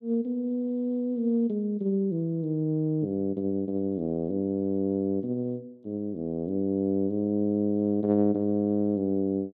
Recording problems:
none

